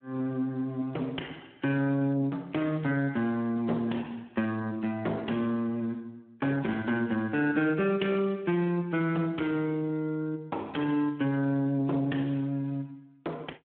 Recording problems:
phone line; 190 Hz to 3.2 kHz, Speex
distorted audio; soft clipping, signal-to-distortion ratio 18 dB

